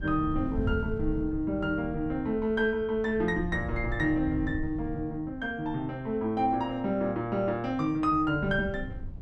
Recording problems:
wind noise; below 120 Hz, SNR 9 dB

